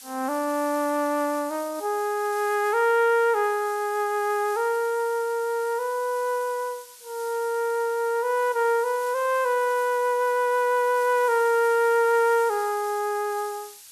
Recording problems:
hiss; slope +4 dB per octave, SNR 18 dB

